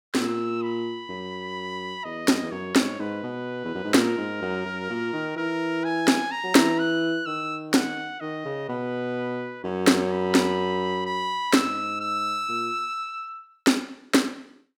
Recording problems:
none

